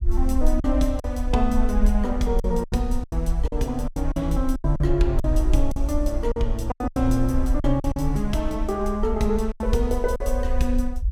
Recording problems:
rumble; below 52 Hz, SNR 2 dB
packet loss; 10% of the sound replaced, filled with silence

